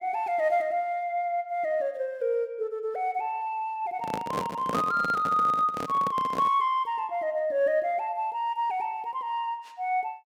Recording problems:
handling noise; from 4 to 6.5 s; peak +1 dB vs average level

